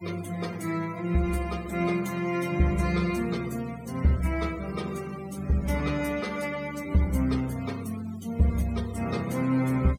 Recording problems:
denoising artefacts; signal-to-artefact ratio 19 dB

